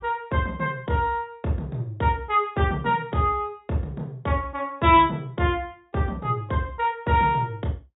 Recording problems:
treble missing; nothing above 4 kHz

